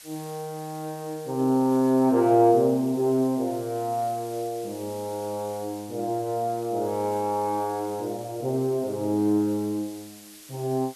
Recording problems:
hiss; slope +3 dB per octave, SNR 20 dB

